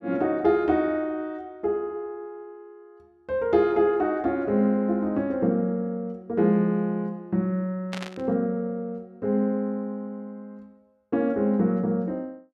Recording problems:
burst of static; at 8 s; peak -5 dB vs average level

